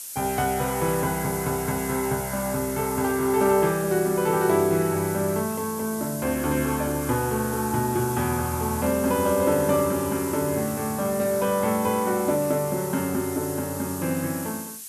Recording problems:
background hiss; SNR 10 dB

